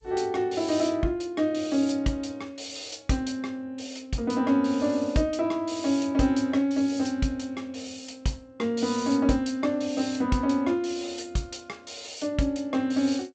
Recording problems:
lossy compression; G.722, log-spectral distance 5 dB, nothing above 7.8 kHz

